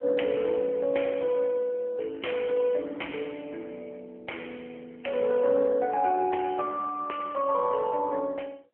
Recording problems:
phone line; 320 Hz to 3.2 kHz, AMR-NB

